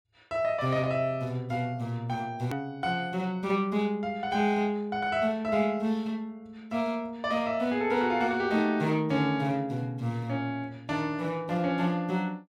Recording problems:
hard cut with a click; at 2.5 s

